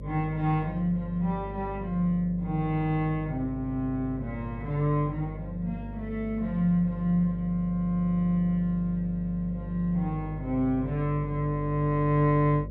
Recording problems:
electrical hum; 50 Hz, harmonics up to 600 Hz, SNR 11 dB

